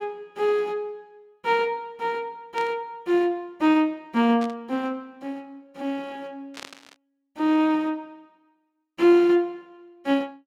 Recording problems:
burst of static; at 2.5 s, at 4.5 s and at 6.5 s; peak -10 dB vs average level

